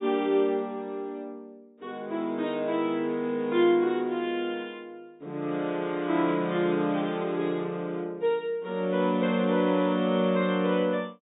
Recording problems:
treble cut off; nothing above 4 kHz

